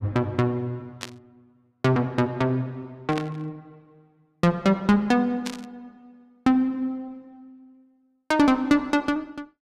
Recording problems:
static burst; at 1 s, at 3 s and at 5.5 s; peak -4 dB vs average level

